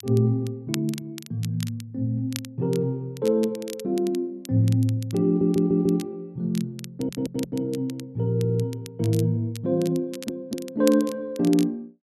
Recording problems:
crackle; vinyl, SNR 17 dB
audio stuttering; 4 times, first at 5.5 s

